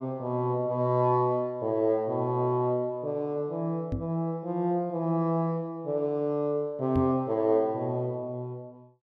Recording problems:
microphone bump; at 4 s and at 7 s; peak +1 dB vs average level

